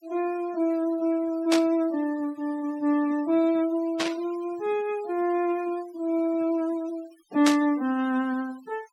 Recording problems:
noise reduction artefacts; signal-to-artefact ratio 22 dB
burst of static; at 1.5 s, at 4 s and at 7.5 s; peak +4 dB vs average level

